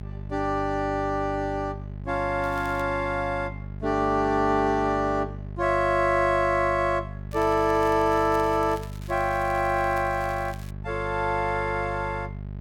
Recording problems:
hum; 50 Hz, harmonics up to 650 Hz, SNR 12 dB
crackle; at 2.5 s and from 7.5 to 11 s; loose cable, SNR 23 dB

